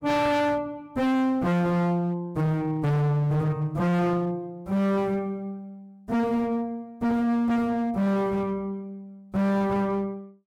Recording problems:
distortion; hard clipping, signal-to-distortion ratio 6 dB

